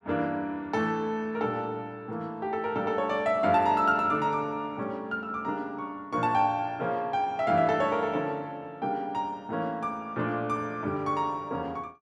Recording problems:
none

